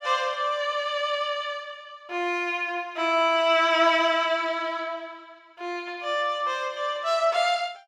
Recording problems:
none

